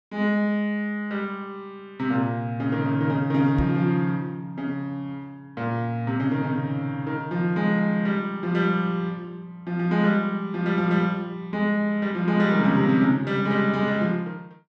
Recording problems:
microphone thump; at 3.5 s; peak +1 dB vs average level

